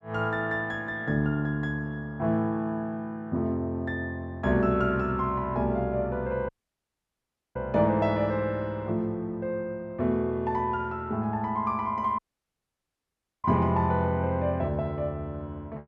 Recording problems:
dropout; at 6.5 s for 1 s and at 12 s for 1.5 s

